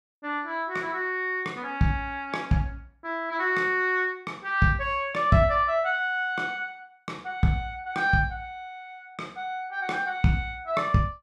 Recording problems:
none

